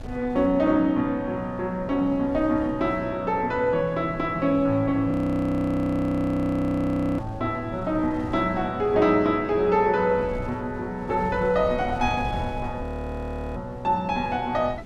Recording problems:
wind noise; below 180 Hz, SNR 16 dB
frozen audio; at 5 s for 2 s and at 13 s for 0.5 s

